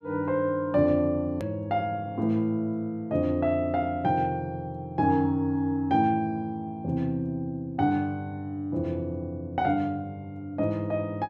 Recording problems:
edit click; at 1.5 s

